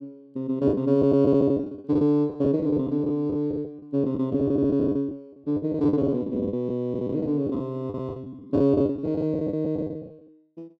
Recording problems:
lost packets; 17% of the sound replaced, filled with the last packet

